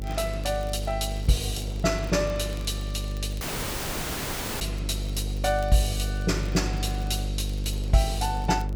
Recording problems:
hum; 50 Hz, harmonics up to 550 Hz, SNR 3 dB
wind noise; below 620 Hz, SNR 21 dB
crackle; vinyl, SNR 23 dB
dropout; at 3.5 s for 1 s

